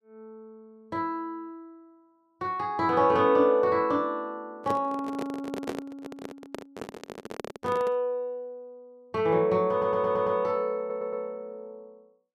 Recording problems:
handling noise; from 4.5 to 8 s; peak -2 dB vs average level
stutter; at 9.5 s and at 11 s

